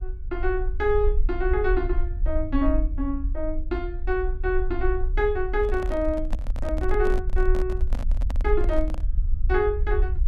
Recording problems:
low-frequency rumble; below 50 Hz, SNR 2 dB
handling noise; from 5.5 to 9 s; peak -5 dB vs average level

